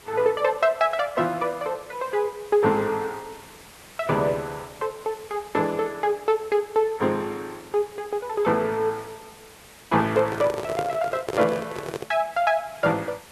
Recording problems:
codec artefacts; Vorbis, log-spectral distance 5 dB
hiss; slope -2 dB per octave, SNR 22 dB
microphone handling noise; from 10 to 12 s; peak 0 dB vs average level

